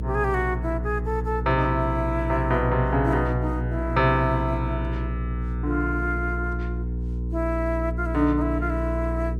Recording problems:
hum; 60 Hz, harmonics up to 480 Hz, SNR 3 dB

